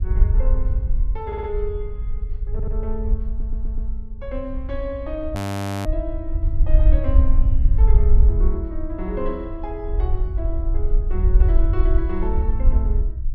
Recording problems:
rumble; below 58 Hz, SNR -9 dB
audio stuttering; at 1.5 s, at 2.5 s and at 3.5 s
audio freezing; at 5.5 s for 0.5 s

